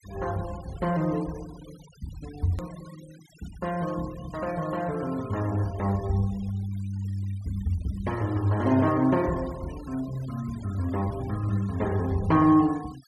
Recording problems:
denoising artefacts; signal-to-artefact ratio 21 dB
hard cut with a click; at 2.5 s

